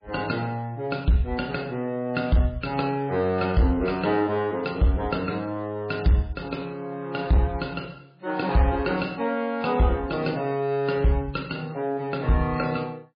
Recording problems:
codec artefacts; MP3, log-spectral distance 3 dB, nothing above 4.5 kHz
distortion; hard clipping, uneven, signal-to-distortion ratio 12 dB

